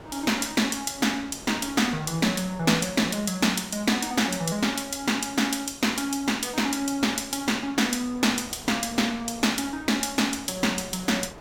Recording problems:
wind on the microphone; below 1 kHz, SNR 20 dB

